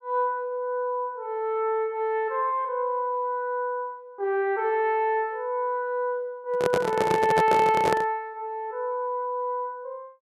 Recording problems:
microphone handling noise; from 6.5 to 8 s; peak +5 dB vs average level

